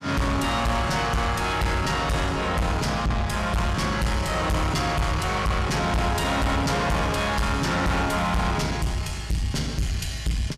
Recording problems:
distorted audio; soft clipping, signal-to-distortion ratio 7 dB

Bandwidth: 14.5 kHz